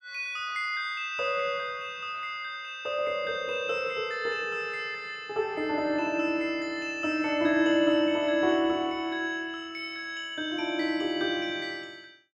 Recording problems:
none

